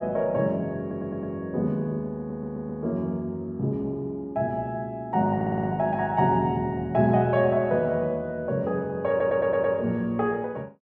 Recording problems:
audio stuttering; 4 times, first at 1 s

